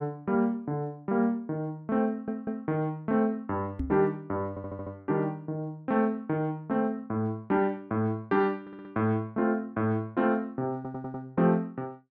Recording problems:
stutter; 4 times, first at 2 s
microphone bump; at 4 s; peak +1 dB vs average level

